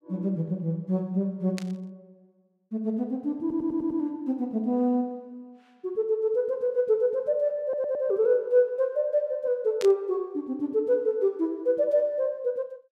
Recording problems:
static burst; at 1.5 s and at 10 s; peak -6 dB vs average level
stutter; at 3.5 s and at 7.5 s

